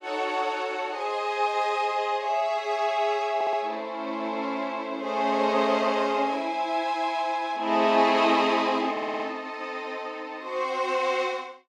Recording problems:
stutter; at 3.5 s and at 9 s

